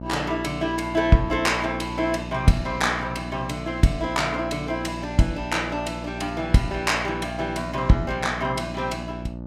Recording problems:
hum; 60 Hz, harmonics up to 900 Hz, SNR 10 dB

